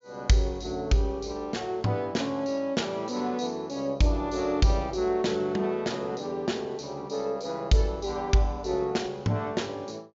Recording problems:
treble cut off; nothing above 7.3 kHz

